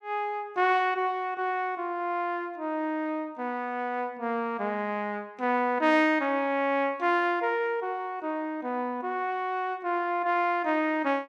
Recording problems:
none

